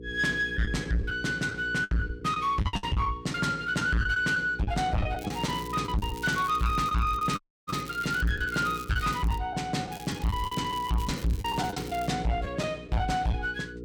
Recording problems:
distorted audio; soft clipping, signal-to-distortion ratio 6 dB
electrical hum; 60 Hz, harmonics up to 480 Hz, SNR 14 dB
packet loss; 8% of the sound replaced, filled with the last packet
crackle; from 5 to 9.5 s and from 10 to 12 s; loose cable, SNR 18 dB
audio cutting out; at 7.5 s

